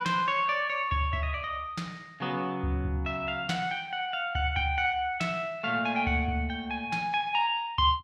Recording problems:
none

